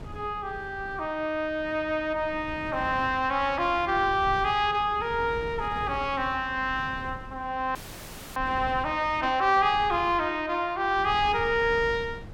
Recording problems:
wind on the microphone; below 260 Hz, SNR 16 dB
frozen audio; at 8 s for 0.5 s

